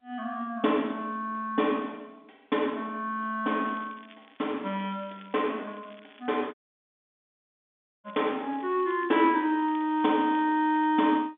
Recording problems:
phone line; 190 Hz to 3.6 kHz, G.711
crackling; from 3.5 to 6.5 s and from 8 to 11 s; loose cable, SNR 27 dB
audio cutting out; at 6.5 s for 1.5 s

